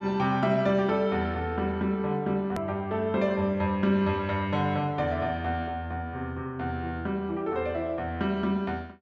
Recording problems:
edit click; at 2.5 s

